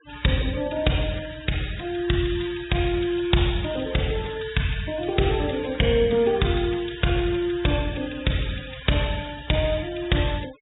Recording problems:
treble cut off; nothing above 4 kHz
denoising artefacts; signal-to-artefact ratio 19 dB

